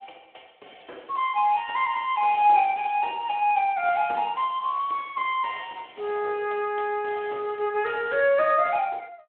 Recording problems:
phone line; 320 Hz to 3.4 kHz, Speex

